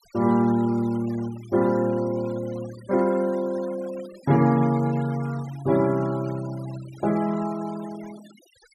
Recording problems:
noise reduction artefacts; signal-to-artefact ratio 21 dB

